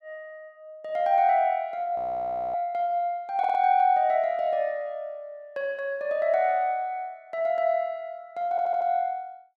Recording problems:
audio freezing; at 2 s for 0.5 s
stutter; at 3.5 s and at 8.5 s

